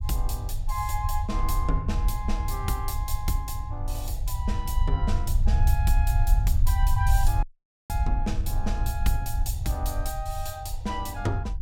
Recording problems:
rumble; below 76 Hz, SNR -4 dB
dropout; at 7.5 s

